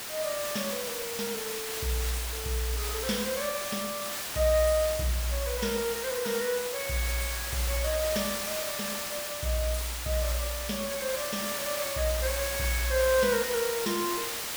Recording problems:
hiss; slope 0 dB per octave, SNR 2 dB

